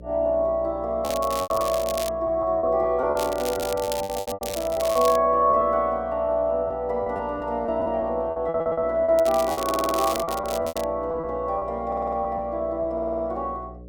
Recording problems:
hum; 60 Hz, harmonics up to 600 Hz, SNR 19 dB
lost packets; 11% of the sound replaced, filled with repeated pitch periods
crackle; from 1 to 2 s, from 3 to 5 s and from 9 to 11 s; loose cable, SNR 11 dB
audio stuttering; 4 times, first at 8.5 s

